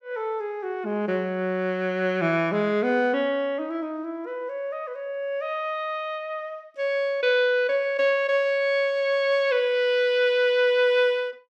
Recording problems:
none

